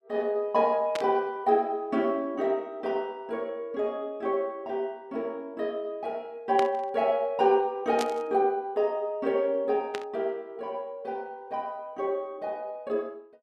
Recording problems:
burst of static; 4 times, first at 1 s; peak -1 dB vs average level

